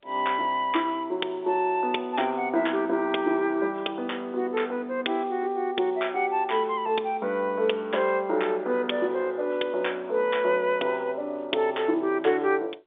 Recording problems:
telephone audio; 260 Hz to 3.6 kHz, G.711

